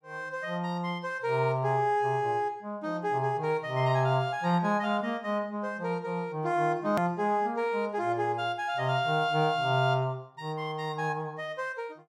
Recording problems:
hard cut with a click; at 7 s

